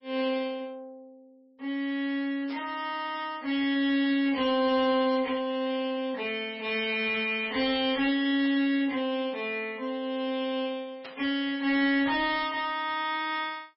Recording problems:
lossy compression; MP3, log-spectral distance 2 dB, nothing above 5.3 kHz
distorted audio; soft clipping, signal-to-distortion ratio 11 dB
static burst; at 2.5 s, at 8.5 s and at 11 s; peak -11 dB vs average level

